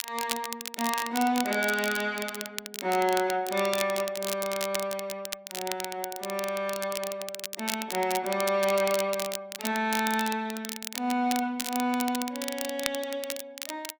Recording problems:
crackling; vinyl, SNR 6 dB

